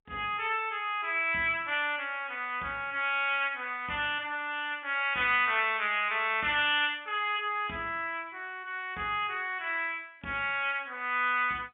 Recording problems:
telephone audio; 130 Hz to 3.7 kHz, G.711

